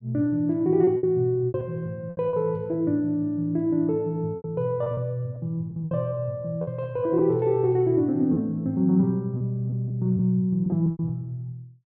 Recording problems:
low-pass filter; nothing above 5.5 kHz
lost packets; 7% of the sound replaced, filled with repeated pitch periods

